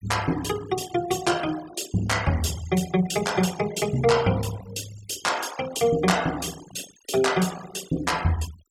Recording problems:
noise reduction artefacts; signal-to-artefact ratio 15 dB

